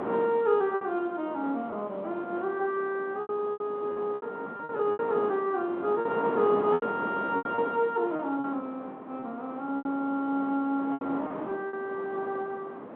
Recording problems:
telephone audio; 240 Hz to 3.7 kHz, G.711
wind noise; below 960 Hz, SNR 9 dB
packet loss; 9% of the sound replaced, filled with repeated pitch periods

